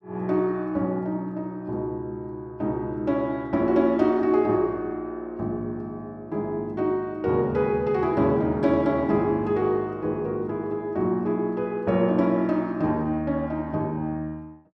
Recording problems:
none

